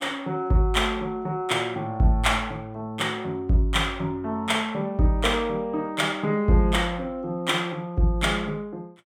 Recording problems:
none

